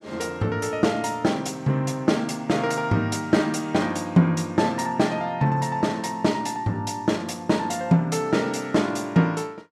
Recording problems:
none

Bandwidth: 15.5 kHz